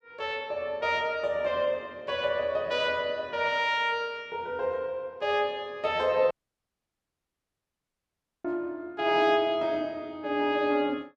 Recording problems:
dropout; at 6.5 s for 2 s

